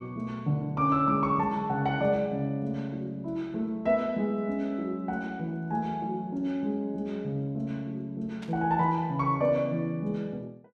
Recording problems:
static burst; at 8.5 s; peak -13 dB vs average level

